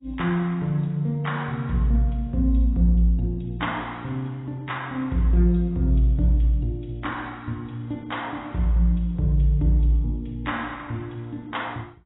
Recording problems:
lossy compression; AAC, log-spectral distance 2 dB, nothing above 3.7 kHz

